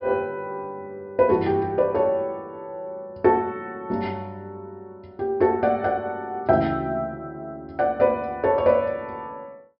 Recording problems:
treble missing; nothing above 5.5 kHz

